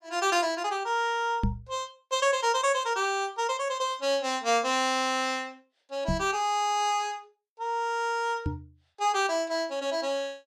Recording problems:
microphone bump; at 1.5 s, at 6 s and at 8.5 s; peak +4 dB vs average level

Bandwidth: 14.5 kHz